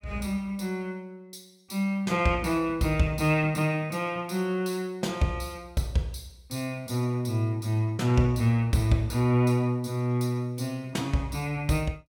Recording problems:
none

